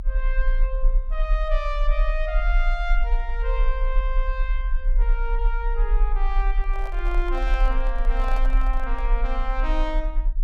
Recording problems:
rumble; below 40 Hz, strongest tone 28 Hz, SNR -6 dB
microphone handling noise; from 6.5 to 9 s; peak -3 dB vs average level

